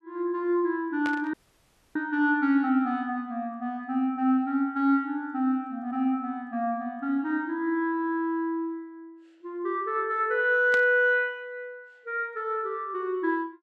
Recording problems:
static burst; at 1 s and at 11 s; peak -5 dB vs average level
audio cutting out; at 1.5 s for 0.5 s

